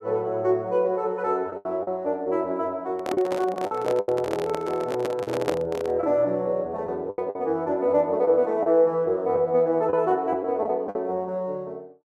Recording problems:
lost packets; 6% of the sound replaced, filled with the last packet
microphone handling noise; from 3 to 6 s; peak +2 dB vs average level

